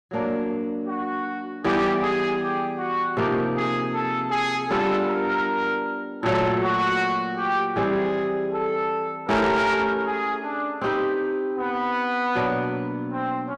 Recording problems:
distorted audio; soft clipping, signal-to-distortion ratio 10 dB

